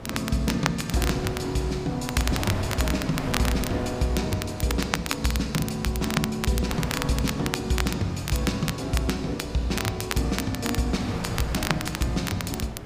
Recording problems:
hum; 60 Hz, harmonics up to 720 Hz, SNR 18 dB
wind noise; below 1 kHz, SNR 10 dB
crackling; vinyl, SNR 6 dB

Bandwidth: 15 kHz